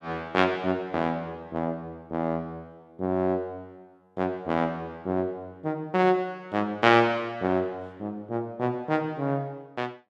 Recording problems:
none

